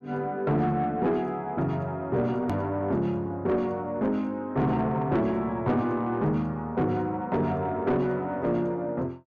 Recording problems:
distortion; soft clipping, signal-to-distortion ratio 11 dB
hard cut with a click; at 2.5 s

